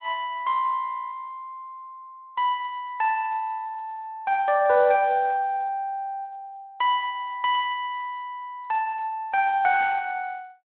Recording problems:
telephone audio; 170 Hz to 3.9 kHz, Speex

